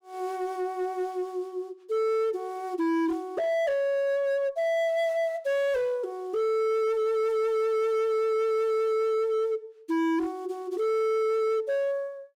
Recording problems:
distorted audio; hard clipping, signal-to-distortion ratio 8 dB

